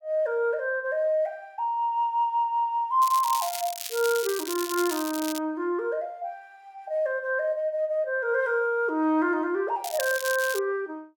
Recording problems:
crackle; from 3 to 5.5 s and at 10 s; loose cable, SNR 8 dB

